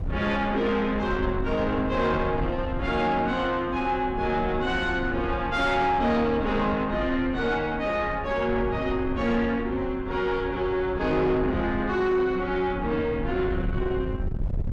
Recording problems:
distortion; soft clipping, signal-to-distortion ratio 12 dB
wind on the microphone; below 140 Hz, SNR 9 dB

